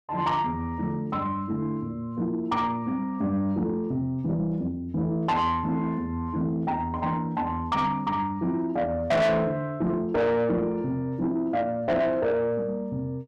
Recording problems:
distorted audio; soft clipping, signal-to-distortion ratio 8 dB

